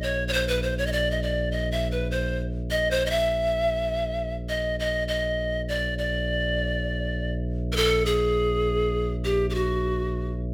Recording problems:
electrical hum; 60 Hz, harmonics up to 660 Hz, SNR 4 dB

